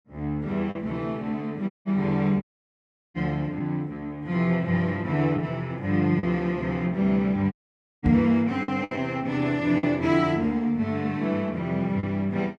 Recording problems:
lost packets; 3% of the sound replaced, filled with the last packet
audio cutting out; at 1.5 s, at 2.5 s for 0.5 s and at 7.5 s for 0.5 s
microphone bump; at 8 s; peak +4 dB vs average level

